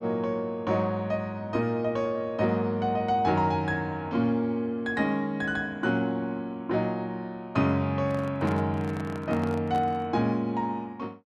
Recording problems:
microphone handling noise; from 8 to 10 s; peak -7 dB vs average level

